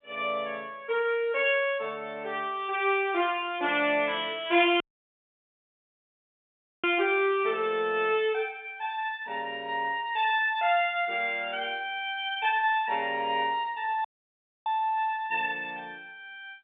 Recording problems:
phone line; 150 Hz to 3.7 kHz, G.711
audio cutting out; at 5 s for 2 s and at 14 s for 0.5 s

